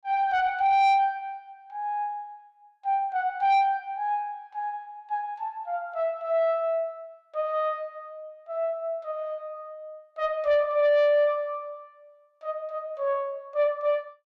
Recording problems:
distortion; soft clipping, signal-to-distortion ratio 11 dB

